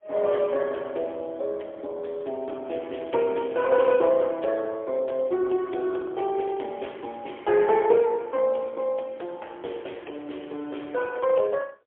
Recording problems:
phone line; 280 Hz to 3.4 kHz, AMR-NB, then MP3

